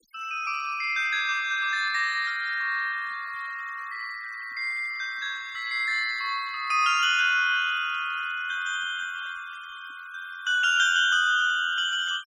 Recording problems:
noise reduction artefacts; signal-to-artefact ratio 25 dB

